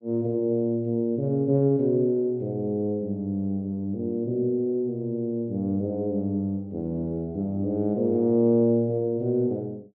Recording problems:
none

